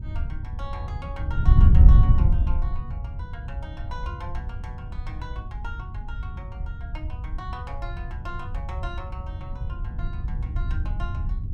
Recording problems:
wind on the microphone; below 90 Hz, SNR -14 dB

